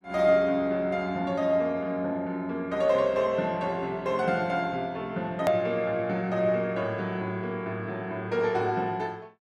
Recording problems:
hard cut with a click; at 5.5 s

